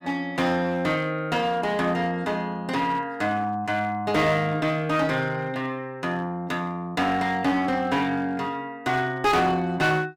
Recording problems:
distorted audio; hard clipping, uneven, signal-to-distortion ratio 10 dB

